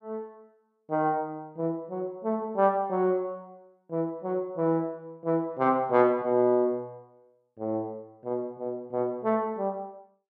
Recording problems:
none

